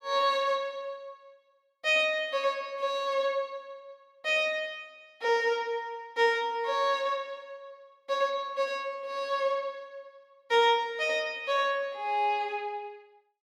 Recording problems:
none

